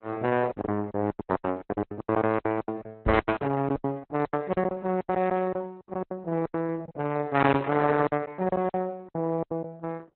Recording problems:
lossy compression; Opus, log-spectral distance 2 dB, nothing above 4 kHz
lost packets; 20% of the sound replaced, filled with silence
microphone bump; at 3 s; peak +1 dB vs average level

